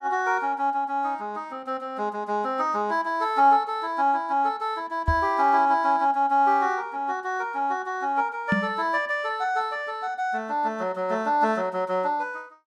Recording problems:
knock on the microphone; at 5 s and at 8.5 s; peak +4 dB vs average level

